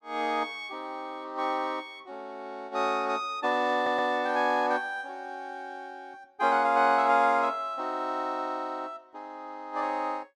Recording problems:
stutter; at 3.5 s

